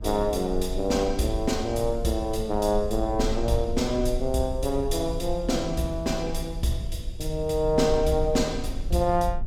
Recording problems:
rumble; below 58 Hz, SNR 9 dB

